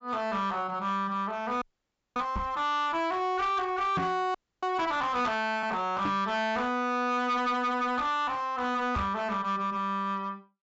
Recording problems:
treble missing; nothing above 8 kHz
distorted audio; hard clipping, uneven, signal-to-distortion ratio 10 dB
frozen audio; at 1.5 s for 0.5 s and at 4.5 s
knock on the microphone; 4 times, first at 2.5 s; peak +1 dB vs average level

